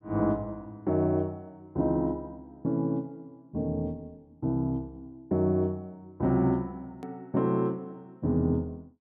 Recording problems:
click at an edit; at 7 s

